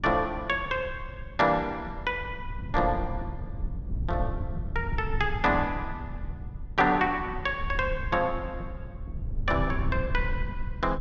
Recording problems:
low-frequency rumble; below 92 Hz, SNR 8 dB

